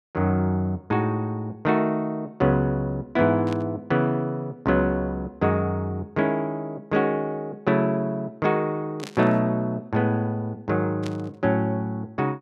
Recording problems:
burst of static; at 3.5 s, at 9 s and at 11 s; peak -9 dB vs average level

